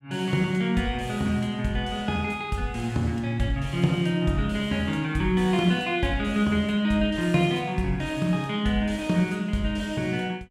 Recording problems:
none

